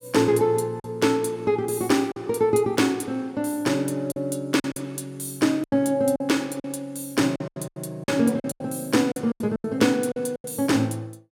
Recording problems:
lost packets; 9% of the sound replaced, filled with silence

